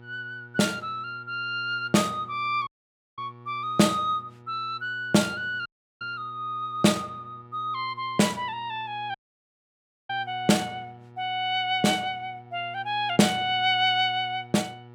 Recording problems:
mains hum; 60 Hz, harmonics up to 1.8 kHz, SNR 22 dB
audio cutting out; at 2.5 s for 0.5 s, at 5.5 s and at 9 s for 1 s

